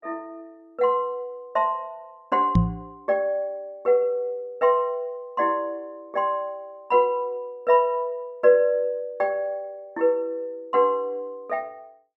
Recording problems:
microphone bump; at 2.5 s; peak +9 dB vs average level

